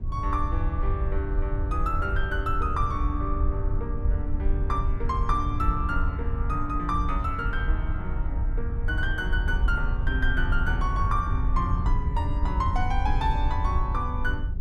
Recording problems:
low-frequency rumble; below 76 Hz, SNR -2 dB

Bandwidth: 14.5 kHz